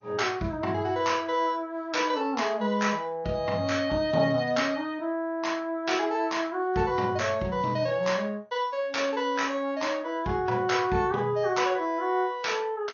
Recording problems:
lossy compression; MP3, then MP2, log-spectral distance 2 dB, nothing above 6.5 kHz

